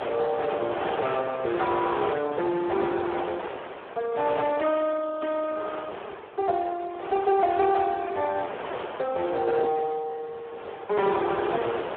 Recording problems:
phone line; 320 Hz to 3.6 kHz, Speex
distorted audio; hard clipping, signal-to-distortion ratio 12 dB
wind on the microphone; below 1.2 kHz, SNR 9 dB

